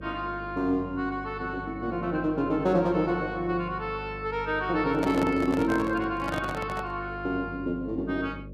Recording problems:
hum; 50 Hz, harmonics up to 600 Hz, SNR 14 dB
microphone handling noise; from 5 to 7 s; peak 0 dB vs average level

